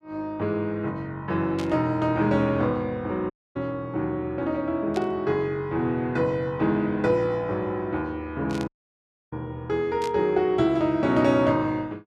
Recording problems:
burst of static; 4 times, first at 1.5 s; peak -8 dB vs average level
dropout; at 3.5 s and at 8.5 s for 0.5 s

